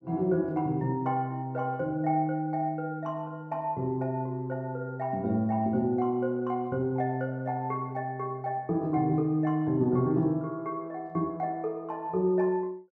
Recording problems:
none

